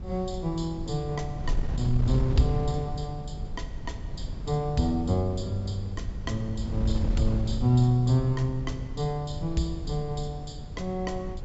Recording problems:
treble cut off; nothing above 8 kHz
wind on the microphone; below 100 Hz, SNR 6 dB

